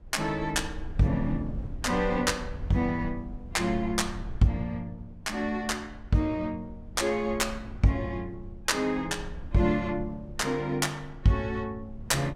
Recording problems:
rumble; below 90 Hz, SNR 14 dB

